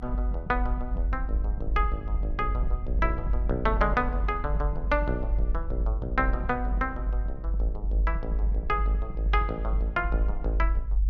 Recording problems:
rumble; below 50 Hz, strongest tone 48 Hz, SNR -1 dB

